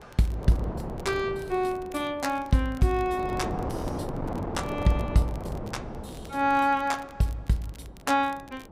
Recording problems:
wind noise; below 610 Hz, SNR 8 dB
crackling; vinyl, SNR 27 dB

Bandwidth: 15.5 kHz